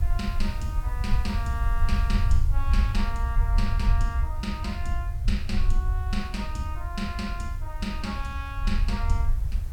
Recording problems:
background hiss; slope -4 dB per octave, SNR 18 dB
rumble; below 68 Hz, SNR -5 dB

